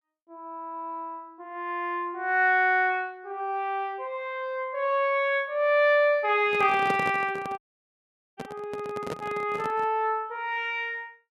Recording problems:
handling noise; from 6.5 to 10 s; peak -1 dB vs average level
audio cutting out; at 7.5 s for 1 s

